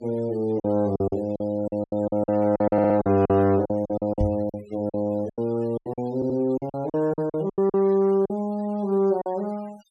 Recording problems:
denoising artefacts; signal-to-artefact ratio 26 dB
lost packets; 14% of the sound replaced, filled with silence
audio stuttering; at 2.5 s and at 6 s
knock on the microphone; at 4 s; peak +2 dB vs average level

